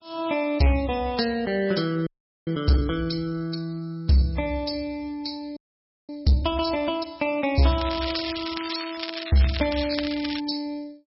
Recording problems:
lossy codec; MP3, log-spectral distance 7 dB, nothing above 5.3 kHz
distorted audio; hard clipping, signal-to-distortion ratio 10 dB
audio freezing; at 2 s and at 5.5 s for 0.5 s
crackling; from 7.5 to 10 s; loose cable, SNR 7 dB

